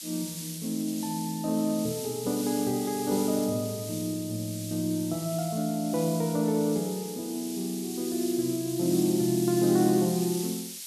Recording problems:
hiss; SNR 9 dB

